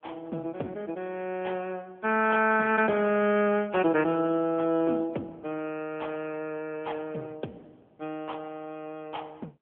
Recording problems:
telephone audio; 170 Hz to 3.3 kHz, AMR-NB

